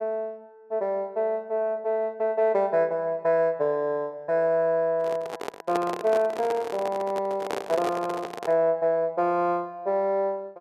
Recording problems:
microphone handling noise; from 5 to 8.5 s; peak -1 dB vs average level

